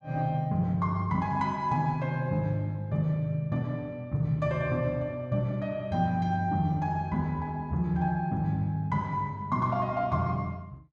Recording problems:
none

